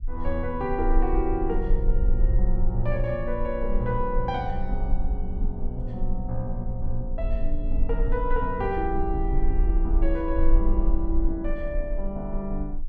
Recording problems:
low-frequency rumble; below 38 Hz, strongest tone 20 Hz, SNR 0 dB

